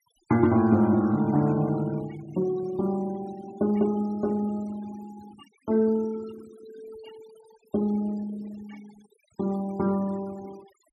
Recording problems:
denoising artefacts; signal-to-artefact ratio 23 dB

